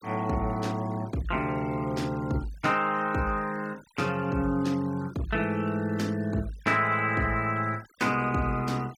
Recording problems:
noise reduction artefacts; signal-to-artefact ratio 22 dB

